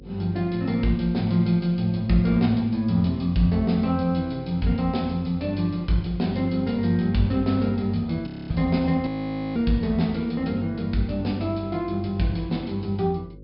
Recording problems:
low-pass filter; nothing above 5.3 kHz
hum; 50 Hz, harmonics up to 550 Hz, SNR 21 dB
frozen audio; at 8.5 s and at 9 s

